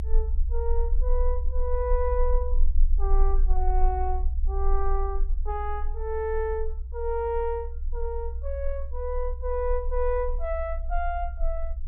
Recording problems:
rumble; below 46 Hz, strongest tone 24 Hz, SNR -1 dB

